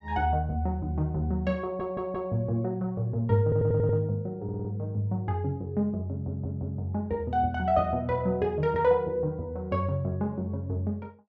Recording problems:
stutter; 4 times, first at 1.5 s

